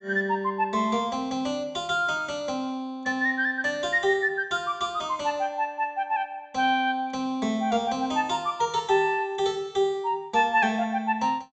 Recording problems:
low-pass filter; nothing above 8 kHz

